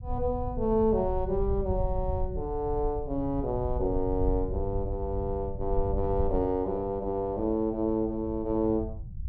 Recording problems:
rumble; below 80 Hz, SNR 7 dB

